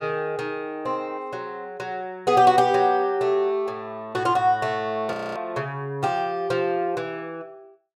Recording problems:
audio freezing; at 5 s

